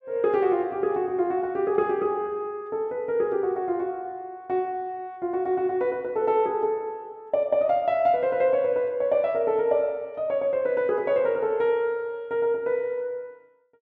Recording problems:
none

